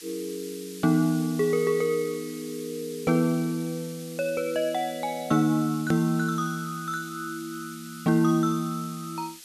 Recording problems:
background hiss; SNR 16 dB
click at an edit; at 6 s

